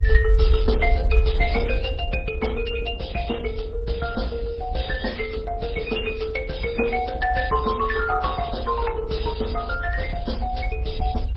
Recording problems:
codec artefacts; MP3, then Opus, log-spectral distance 2 dB, nothing above 5 kHz
rumble; below 66 Hz, SNR 2 dB

